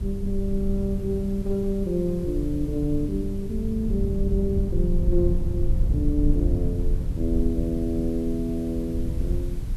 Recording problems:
hiss; slope -3 dB per octave, SNR 24 dB
rumble; below 84 Hz, SNR 1 dB

